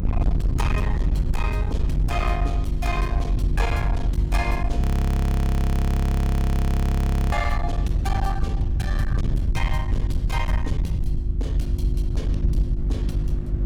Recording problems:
distorted audio; hard clipping, uneven, signal-to-distortion ratio 7 dB
hum; 50 Hz, harmonics up to 350 Hz, SNR -1 dB
low-frequency rumble; below 88 Hz, SNR -6 dB
wind noise; below 290 Hz, SNR 12 dB
audio freezing; at 5 s for 2.5 s

